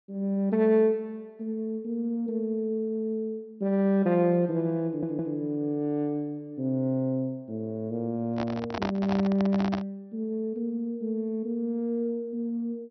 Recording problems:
treble missing; nothing above 5.9 kHz
stutter; at 5 s
microphone handling noise; from 8.5 to 10 s; peak +1 dB vs average level

